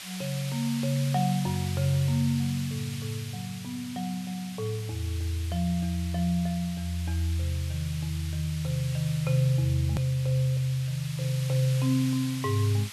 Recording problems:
hiss; SNR 12 dB
edit click; at 10 s

